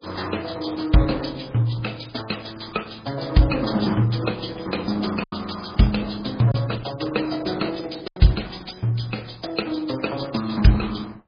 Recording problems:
lossy codec; Opus, then MP3, log-spectral distance 9 dB, nothing above 5 kHz
packet loss; 1.6% of the sound replaced, filled with silence

